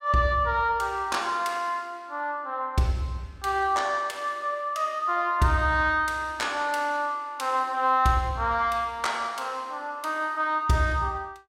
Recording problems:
none

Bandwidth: 16 kHz